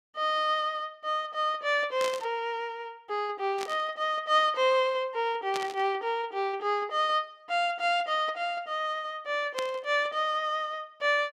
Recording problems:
burst of static; 4 times, first at 2 s; peak -2 dB vs average level

